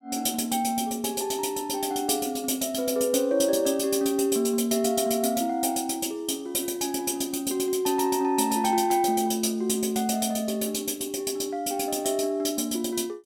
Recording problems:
none

